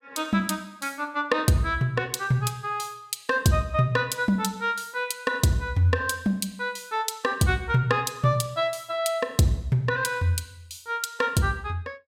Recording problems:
none

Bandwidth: 16.5 kHz